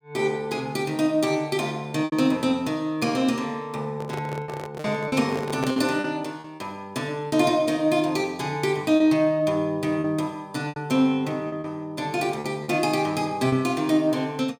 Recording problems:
lost packets; 5% of the sound replaced, filled with repeated pitch periods
microphone handling noise; from 4 to 6 s; peak -1 dB vs average level

